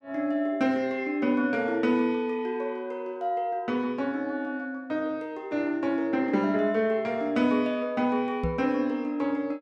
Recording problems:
microphone bump; at 8.5 s; peak +1 dB vs average level

